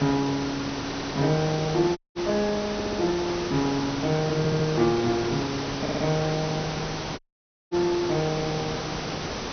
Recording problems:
low-pass filter; nothing above 6.1 kHz
hiss; slope -4 dB per octave, SNR 5 dB
stutter; 4 times, first at 1 s
dropout; at 2 s and at 7 s for 0.5 s

